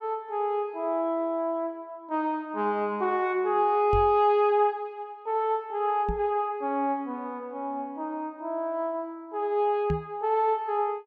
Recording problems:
microphone thump; at 4 s, at 6 s and at 10 s; peak +1 dB vs average level

